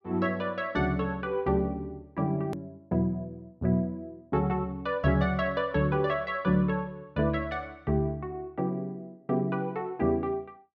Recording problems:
hard cut with a click; at 2.5 s

